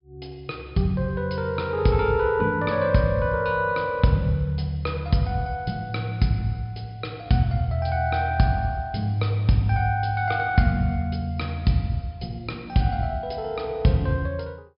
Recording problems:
treble missing; nothing above 5.5 kHz

